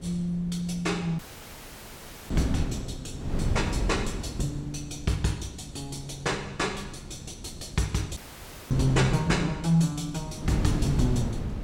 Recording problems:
wind on the microphone; below 220 Hz, SNR 5 dB
audio cutting out; at 1 s for 1 s and at 8 s for 0.5 s

